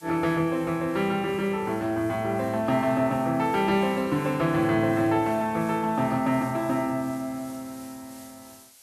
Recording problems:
background hiss; SNR 23 dB

